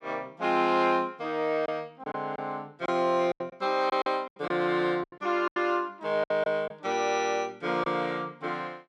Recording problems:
packet loss; 8% of the sound replaced, filled with silence

